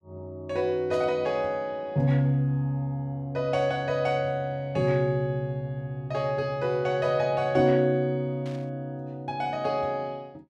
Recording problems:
static burst; at 1 s and at 8.5 s; peak -16 dB vs average level

